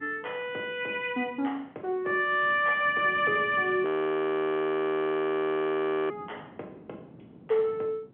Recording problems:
telephone audio; 190 Hz to 3.4 kHz, G.711
wind noise; below 1 kHz, SNR 20 dB
crackle; at 2.5 s and at 3 s; loose cable, SNR 27 dB
frozen audio; at 4 s for 2 s

